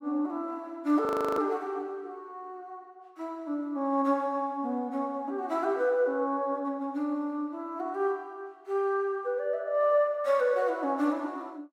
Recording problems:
audio freezing; at 1 s

